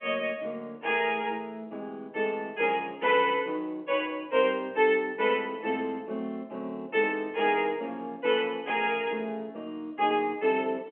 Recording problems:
telephone audio; 240 Hz to 3.3 kHz, G.711

